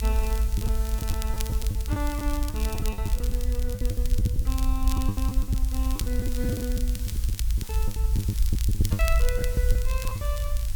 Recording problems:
hiss; slope +1 dB per octave, SNR 7 dB
low-frequency rumble; below 70 Hz, SNR -8 dB
crackle; vinyl, SNR 5 dB
lost packets; 15% of the sound replaced, filled with the last packet

